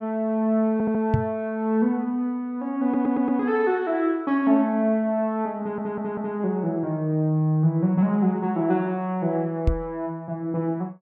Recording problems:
audio stuttering; at 0.5 s, at 3 s and at 5.5 s
microphone thump; at 1 s and at 9.5 s; peak +6 dB vs average level

